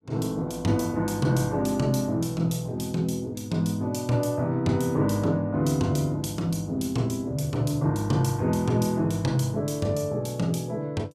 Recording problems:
none

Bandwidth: 15.5 kHz